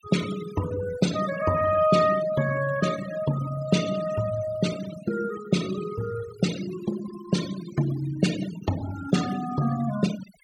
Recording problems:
denoising artefacts; signal-to-artefact ratio 12 dB

